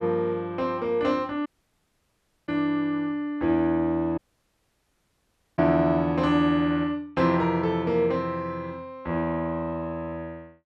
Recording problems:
audio cutting out; at 1.5 s for 1 s and at 4 s for 1.5 s

